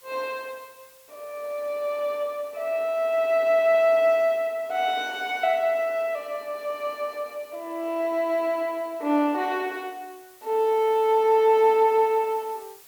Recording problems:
background hiss; slope +1 dB per octave, SNR 27 dB

